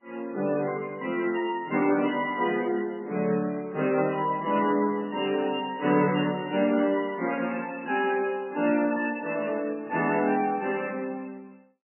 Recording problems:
lossy codec; MP3, then AAC, log-spectral distance 4 dB, nothing above 2.9 kHz

